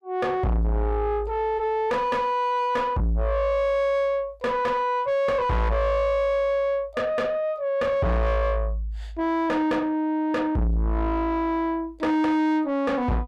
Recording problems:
distorted audio; soft clipping, signal-to-distortion ratio 6 dB

